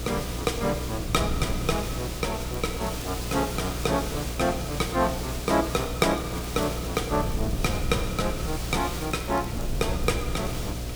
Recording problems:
hum; 60 Hz, harmonics up to 720 Hz, SNR 7 dB
background hiss; slope -1 dB per octave, SNR 8 dB
wind on the microphone; below 130 Hz, SNR 9 dB
crackle; from 2.5 to 4 s, from 6 to 7.5 s and from 9 to 10 s; loose cable, SNR 20 dB

